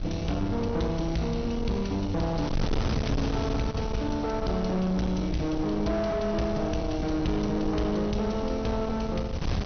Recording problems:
treble cut off; nothing above 6.2 kHz
distorted audio; soft clipping, signal-to-distortion ratio 7 dB
low-frequency rumble; below 140 Hz, SNR 9 dB
wind noise; below 340 Hz, SNR 7 dB

